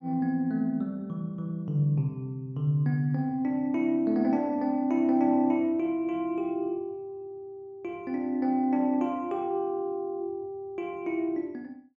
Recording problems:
none

